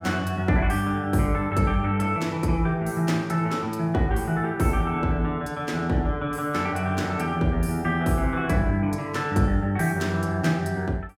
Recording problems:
none

